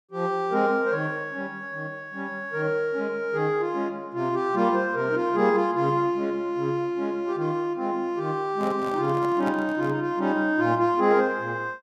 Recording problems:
microphone handling noise; from 8.5 to 10 s; peak -7 dB vs average level

